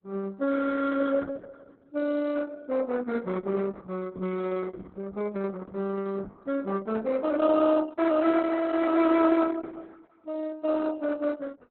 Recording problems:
lossy compression; Opus, log-spectral distance 4 dB, nothing above 4 kHz

